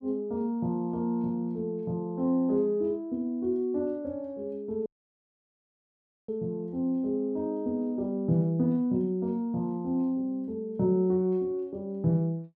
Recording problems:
dropout; at 5 s for 1.5 s

